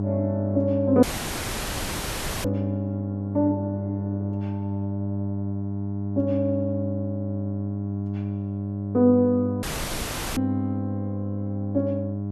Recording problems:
hum; 50 Hz, harmonics up to 700 Hz, SNR 3 dB
dropout; at 1 s for 1.5 s and at 9.5 s for 0.5 s

